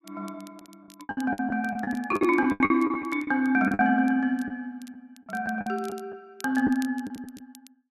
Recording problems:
crackling; vinyl, SNR 26 dB
packet loss; 12% of the sound replaced, filled with the last packet

